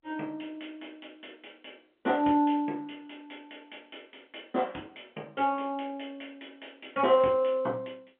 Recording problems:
telephone audio; 240 Hz to 3.3 kHz, G.711

